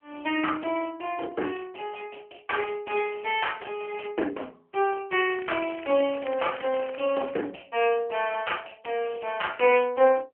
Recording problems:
phone line; 280 Hz to 3.2 kHz, AMR-NB
crackle; from 5 to 7.5 s; loose cable, SNR 16 dB

